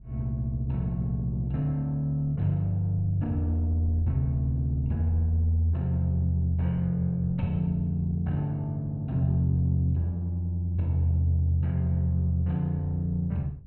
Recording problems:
wind on the microphone; below 98 Hz, SNR 21 dB

